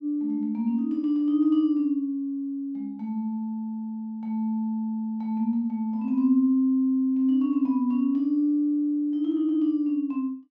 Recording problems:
none

